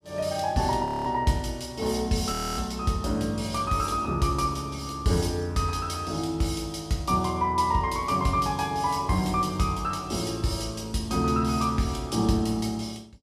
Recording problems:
audio freezing; at 1 s and at 2.5 s

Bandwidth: 14.5 kHz